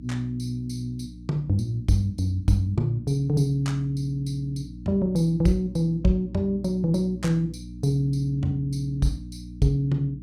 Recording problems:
hum; 60 Hz, harmonics up to 300 Hz, SNR 15 dB

